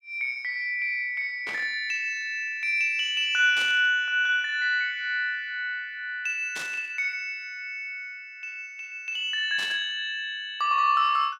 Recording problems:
static burst; 4 times, first at 1.5 s; peak -6 dB vs average level

